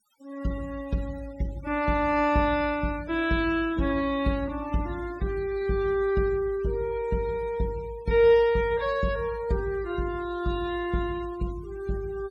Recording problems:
noise reduction artefacts; signal-to-artefact ratio 19 dB

